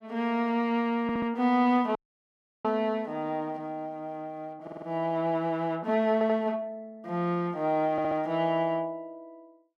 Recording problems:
stutter; 4 times, first at 1 s
audio cutting out; at 2 s for 0.5 s

